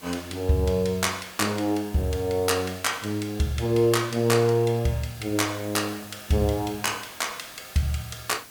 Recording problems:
background hiss; slope -1 dB per octave, SNR 19 dB

